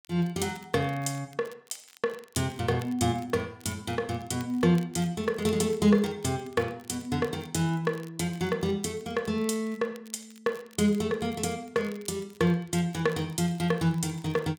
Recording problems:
crackling; vinyl, SNR 25 dB

